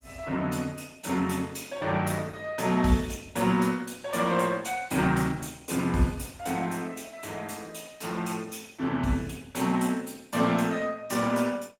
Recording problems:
codec artefacts; Opus, log-spectral distance 5 dB, nothing above 16.5 kHz

